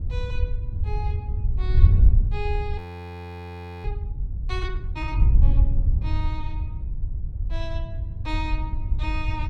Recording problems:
wind noise; below 78 Hz, SNR -11 dB
audio freezing; at 3 s for 1 s

